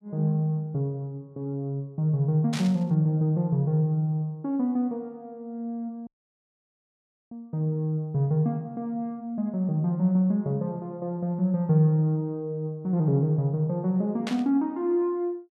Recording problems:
burst of static; at 2.5 s and at 14 s; peak -4 dB vs average level
dropout; at 6 s for 1 s

